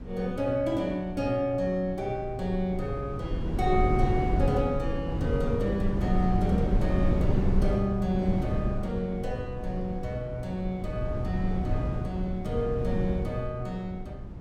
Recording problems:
low-frequency rumble; below 170 Hz, SNR 1 dB

